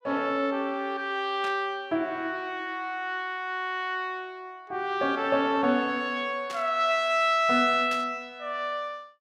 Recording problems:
burst of static; at 1.5 s, at 6.5 s and at 8 s; peak -8 dB vs average level

